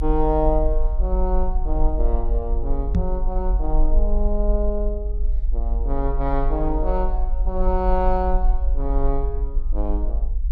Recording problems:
rumble; below 46 Hz, strongest tone 24 Hz, SNR -2 dB
knock on the microphone; at 3 s; peak +8 dB vs average level

